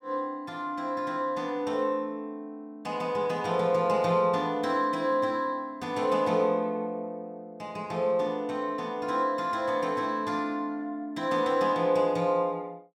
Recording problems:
none

